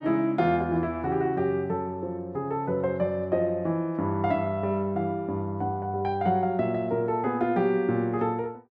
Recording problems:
none

